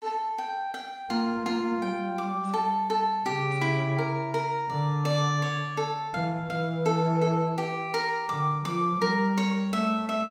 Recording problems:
none

